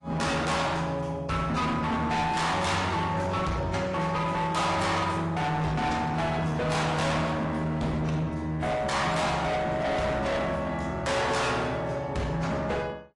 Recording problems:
codec artefacts; AAC, log-spectral distance 3 dB, nothing above 10.7 kHz
distorted audio; hard clipping, signal-to-distortion ratio 6 dB

